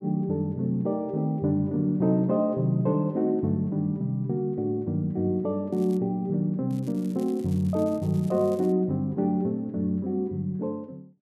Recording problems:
crackling; at 5.5 s and from 6.5 to 8.5 s; loose cable, SNR 27 dB

